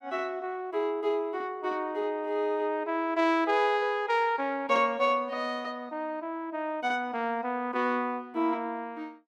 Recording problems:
none

